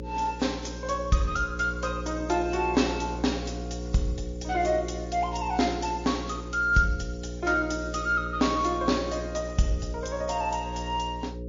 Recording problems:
codec artefacts; MP3, log-spectral distance 4 dB
mains hum; 60 Hz, harmonics up to 540 Hz, SNR 9 dB

